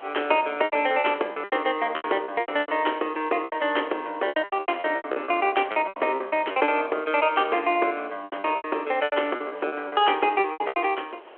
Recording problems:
telephone audio; 320 Hz to 3.3 kHz, G.726
background hiss; SNR 23 dB
packet loss; 18% of the sound replaced, filled with repeated pitch periods

